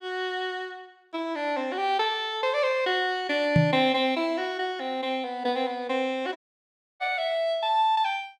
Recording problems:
microphone thump; at 3.5 s; peak +8 dB vs average level
audio cutting out; at 6.5 s for 0.5 s

